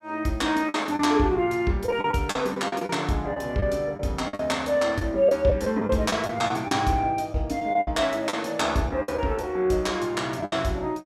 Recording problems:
lost packets; 9% of the sound replaced, filled with the last packet

